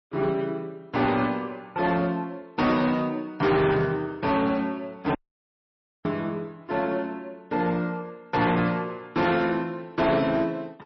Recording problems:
lossy compression; MP3, log-spectral distance 2 dB, nothing above 5.2 kHz
distorted audio; hard clipping, uneven, signal-to-distortion ratio 11 dB
audio cutting out; at 5 s for 1 s

